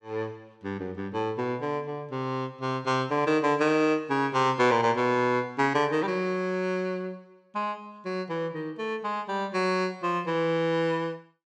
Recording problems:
none

